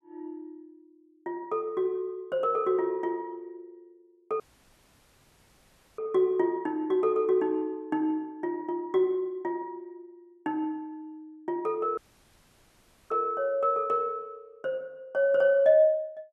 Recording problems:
audio cutting out; at 4.5 s for 1.5 s and at 12 s for 1 s

